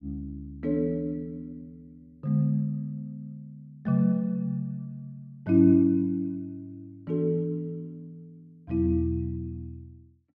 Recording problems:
none

